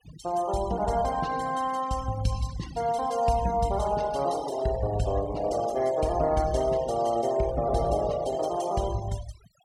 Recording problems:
denoising artefacts; signal-to-artefact ratio 17 dB

